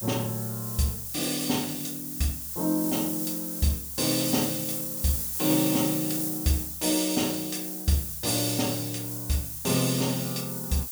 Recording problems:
hiss; SNR 3 dB

